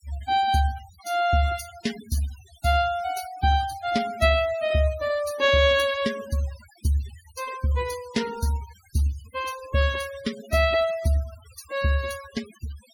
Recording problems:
noise reduction artefacts; signal-to-artefact ratio 18 dB

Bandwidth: 18.5 kHz